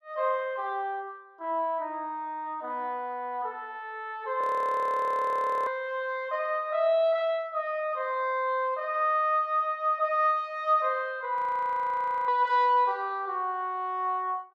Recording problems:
audio freezing; at 4.5 s for 1.5 s and at 11 s for 1 s

